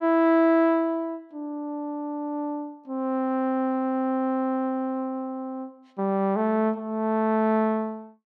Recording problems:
none

